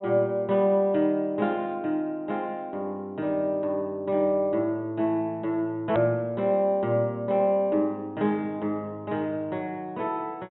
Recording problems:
treble cut off; nothing above 3.9 kHz
click at an edit; at 6 s

